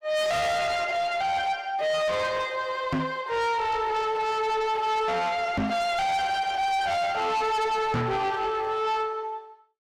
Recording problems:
distorted audio; soft clipping, signal-to-distortion ratio 6 dB
microphone bump; at 3 s, at 5.5 s and at 8 s; peak +3 dB vs average level

